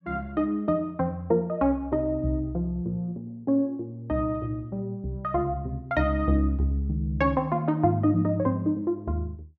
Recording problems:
none

